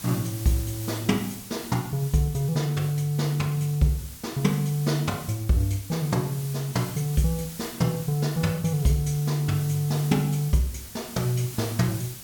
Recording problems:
hiss; SNR 13 dB

